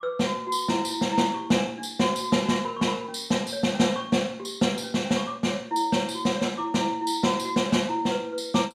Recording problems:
none

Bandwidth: 15 kHz